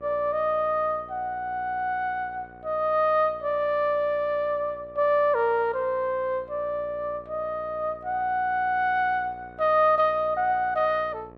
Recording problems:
hum; 60 Hz, harmonics up to 1.9 kHz, SNR 24 dB

